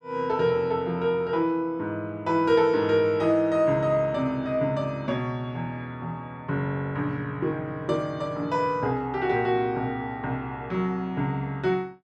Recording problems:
none

